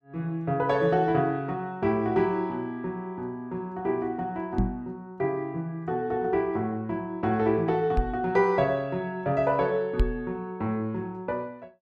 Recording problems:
microphone bump; at 4.5 s, at 8 s and at 10 s; peak +6 dB vs average level

